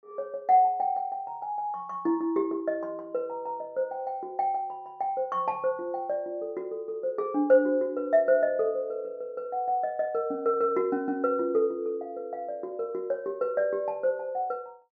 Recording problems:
treble cut off; nothing above 6.5 kHz

